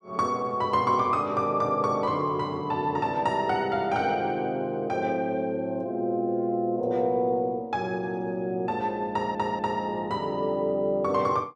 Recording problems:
audio stuttering; at 9 s

